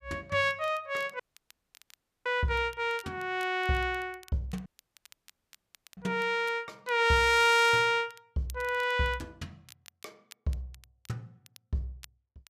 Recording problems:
crackling; vinyl, SNR 27 dB
dropout; at 1 s for 1 s and at 4.5 s for 1.5 s

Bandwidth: 14.5 kHz